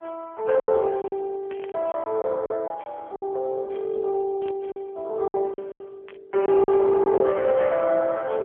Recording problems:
phone line; 340 Hz to 2.6 kHz, AMR-NB
packet loss; 8% of the sound replaced, filled with silence
burst of static; at 1.5 s, at 4.5 s and at 6 s; peak -17 dB vs average level

